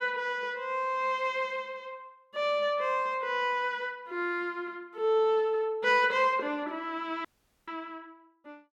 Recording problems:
dropout; at 7.5 s

